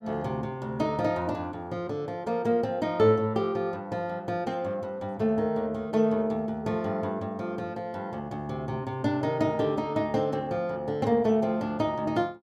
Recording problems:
none

